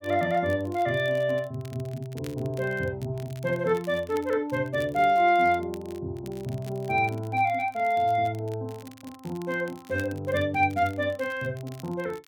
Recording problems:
crackling; vinyl, SNR 25 dB

